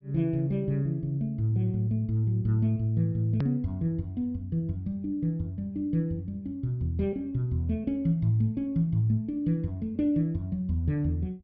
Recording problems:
treble missing; nothing above 5.6 kHz
hard cut with a click; at 3.5 s

